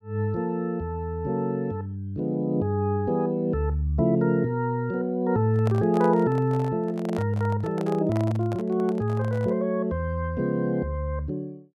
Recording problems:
microphone handling noise; from 5.5 to 9.5 s; peak -7 dB vs average level

